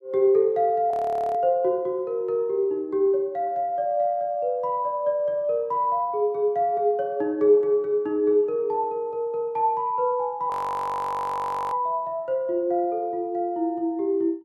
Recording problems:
frozen audio; at 1 s and at 11 s for 1 s

